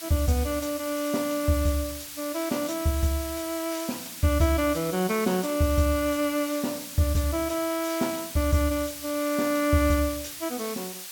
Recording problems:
background hiss; slope +3 dB per octave, SNR 10 dB

